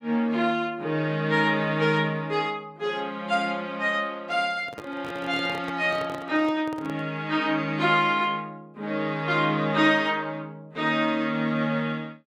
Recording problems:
handling noise; from 4.5 to 7 s; peak -9 dB vs average level

